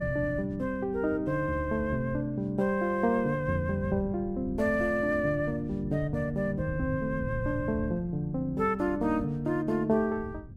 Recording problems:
wind on the microphone; below 170 Hz, SNR 13 dB

